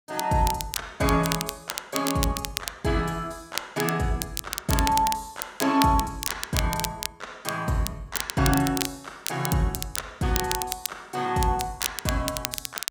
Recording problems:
crackle; vinyl, SNR 5 dB

